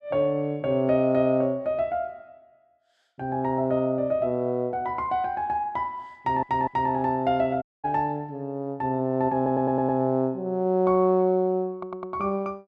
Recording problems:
stutter; at 6 s, at 9.5 s and at 12 s
audio cutting out; at 7.5 s

